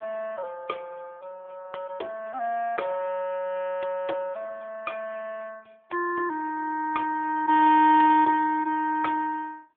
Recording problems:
telephone audio; 260 Hz to 2.3 kHz, AMR-NB

